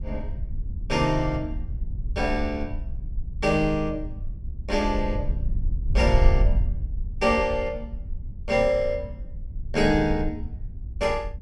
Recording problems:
wind noise; below 66 Hz, SNR 5 dB

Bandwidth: 13 kHz